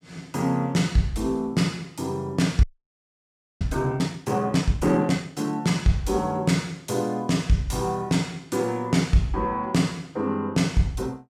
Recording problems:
frozen audio; at 2.5 s for 1 s

